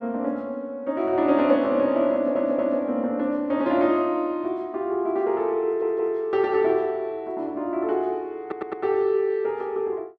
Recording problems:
stutter; at 2 s, at 5.5 s and at 8.5 s

